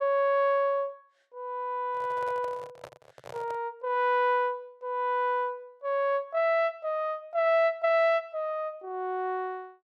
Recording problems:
microphone handling noise; from 2 to 3.5 s; peak -11 dB vs average level

